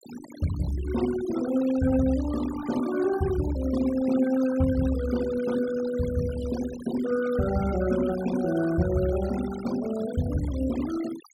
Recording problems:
denoising artefacts; signal-to-artefact ratio 14 dB

